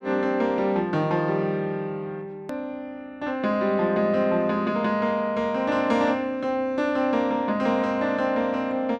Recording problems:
click at an edit; at 2.5 s

